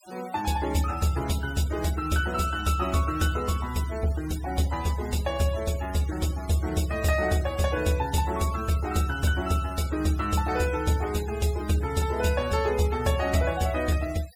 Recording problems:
noise reduction artefacts; signal-to-artefact ratio 16 dB

